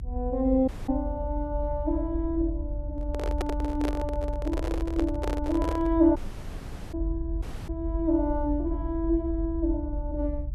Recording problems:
low-frequency rumble; below 66 Hz, strongest tone 46 Hz, SNR 5 dB
dropout; at 0.5 s, at 6 s for 1 s and at 7.5 s
microphone handling noise; from 3 to 6 s; peak +1 dB vs average level

